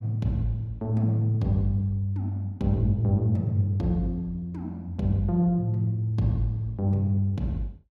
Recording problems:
none

